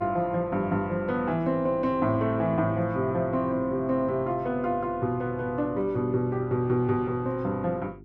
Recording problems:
hum; 50 Hz, harmonics up to 400 Hz, SNR 21 dB

